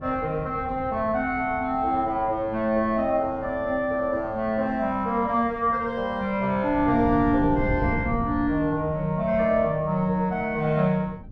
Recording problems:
wind noise; below 190 Hz, SNR 13 dB

